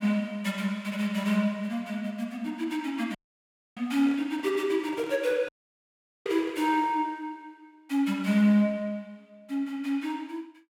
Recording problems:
dropout; at 3 s for 0.5 s and at 5.5 s for 1 s
handling noise; from 4 to 7 s; peak -11 dB vs average level

